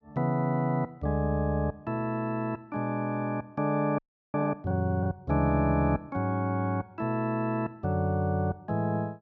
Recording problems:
frozen audio; at 4 s

